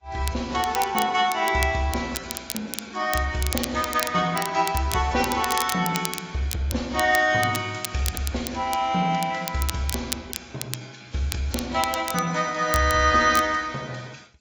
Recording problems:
lossy compression; AAC, then AAC, log-spectral distance 4 dB
crackling; vinyl, SNR 10 dB

